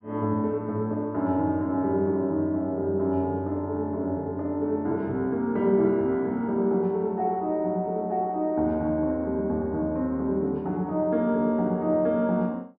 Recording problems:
treble missing; nothing above 5.5 kHz

